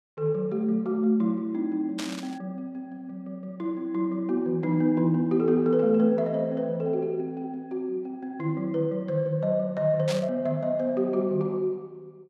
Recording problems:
static burst; at 2 s and at 10 s; peak -4 dB vs average level

